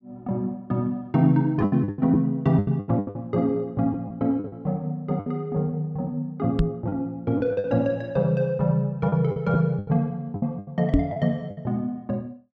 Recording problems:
packet loss; 10% of the sound replaced, filled with the last packet
microphone thump; at 6.5 s and at 11 s; peak +8 dB vs average level

